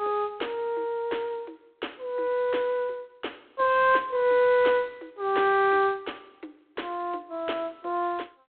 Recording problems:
phone line; 280 Hz to 3.9 kHz, G.726

